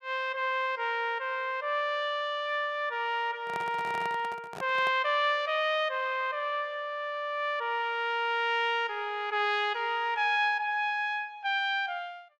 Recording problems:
handling noise; from 3.5 to 5 s; peak -7 dB vs average level

